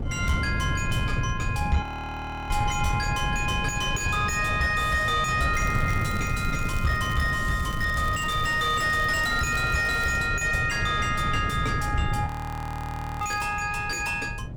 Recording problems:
distorted audio; soft clipping, signal-to-distortion ratio 8 dB
wind on the microphone; below 160 Hz, SNR 4 dB
audio freezing; at 2 s for 0.5 s and at 12 s for 1 s
crackle; from 5.5 to 10 s and at 13 s; loose cable, SNR 19 dB

